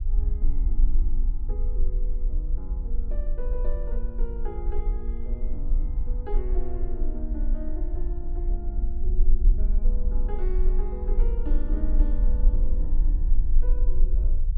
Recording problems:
treble cut off; nothing above 4.8 kHz
rumble; below 38 Hz, strongest tone 18 Hz, SNR -12 dB

